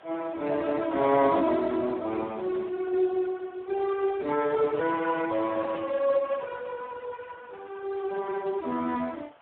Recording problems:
phone line; 220 Hz to 2.7 kHz, Speex
background hiss; SNR 26 dB

